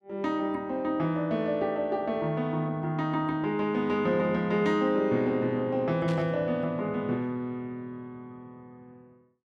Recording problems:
static burst; at 6 s; peak -9 dB vs average level

